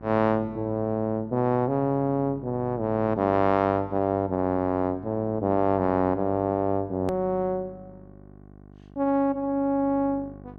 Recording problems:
hum; 50 Hz, harmonics up to 1.1 kHz, SNR 20 dB
click at an edit; at 7 s

